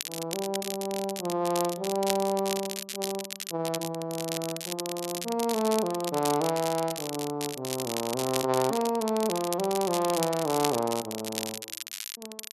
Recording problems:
crackle; vinyl, SNR 6 dB

